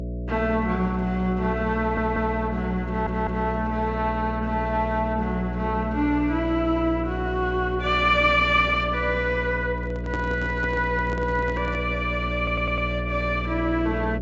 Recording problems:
treble cut off; nothing above 8 kHz
electrical hum; 60 Hz, harmonics up to 660 Hz, SNR 6 dB
audio stuttering; at 2 s, at 3 s and at 12 s
microphone handling noise; from 9.5 to 12 s; peak -4 dB vs average level

